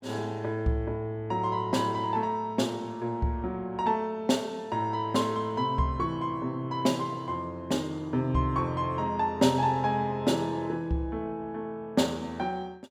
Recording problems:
none

